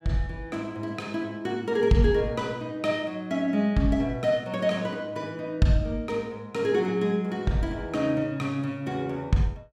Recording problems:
none

